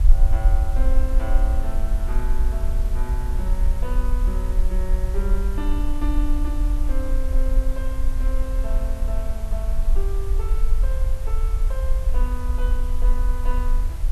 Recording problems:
background hiss; slope -4 dB per octave, SNR 9 dB
rumble; below 46 Hz, strongest tone 20 Hz, SNR -10 dB

